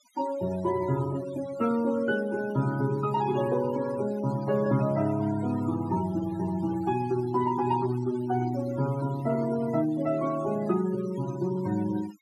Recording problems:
noise reduction artefacts; signal-to-artefact ratio 16 dB

